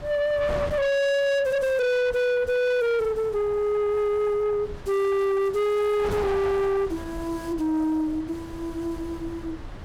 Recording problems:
distortion; soft clipping, signal-to-distortion ratio 7 dB
wind on the microphone; below 800 Hz, SNR 14 dB

